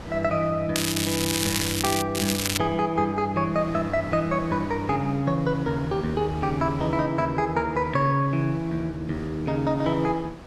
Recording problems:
wind noise; below 850 Hz, SNR 16 dB
crackle; from 1 to 2 s and at 2 s; loose cable, SNR 1 dB

